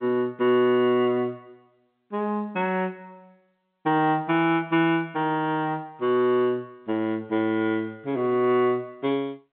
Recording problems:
telephone audio; 130 Hz to 3.9 kHz, G.711

